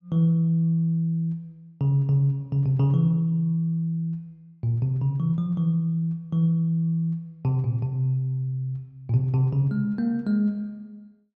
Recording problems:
none

